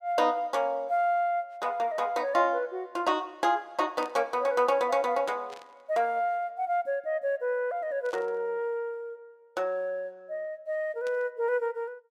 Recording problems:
static burst; 4 times, first at 4 s; peak -14 dB vs average level

